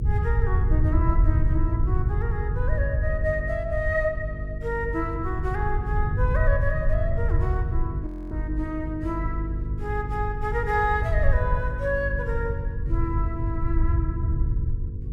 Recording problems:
electrical hum; 50 Hz, harmonics up to 500 Hz, SNR 4 dB
rumble; below 90 Hz, SNR -2 dB
audio freezing; at 8 s

